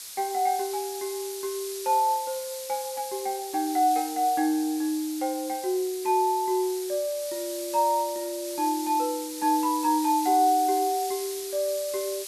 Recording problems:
background hiss; slope +4 dB per octave, SNR 10 dB

